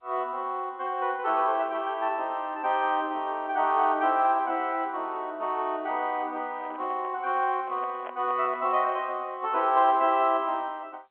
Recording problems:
phone line; 260 Hz to 3.3 kHz, G.711
microphone handling noise; from 6.5 to 9 s; peak -9 dB vs average level

